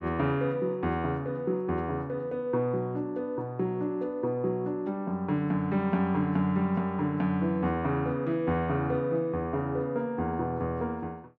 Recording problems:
none

